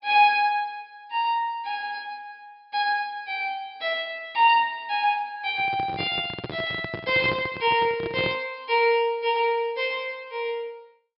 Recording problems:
treble missing; nothing above 5.5 kHz
microphone handling noise; from 5.5 to 8.5 s; peak -3 dB vs average level

